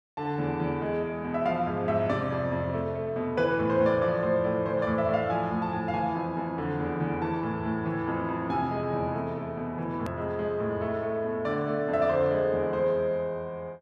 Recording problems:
edit click; at 10 s

